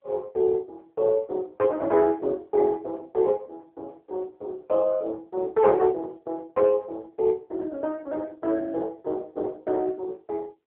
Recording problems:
phone line; 300 Hz to 2.1 kHz, AMR-NB

